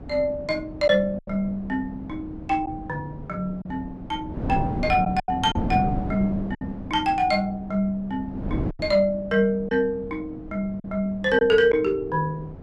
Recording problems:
wind noise; below 290 Hz, SNR 10 dB
packet loss; 4% of the sound replaced, filled with silence

